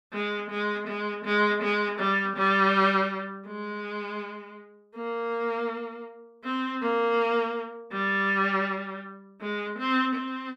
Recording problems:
none

